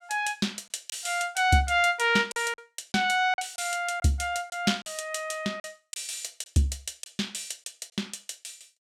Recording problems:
packet loss; 5% of the sound replaced, filled with silence

